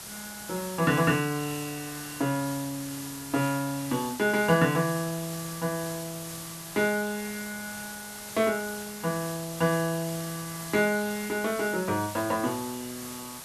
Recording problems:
background hiss; slope 0 dB per octave, SNR 10 dB

